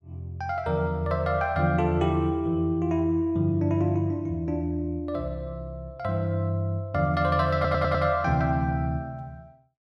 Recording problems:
stutter; at 7.5 s

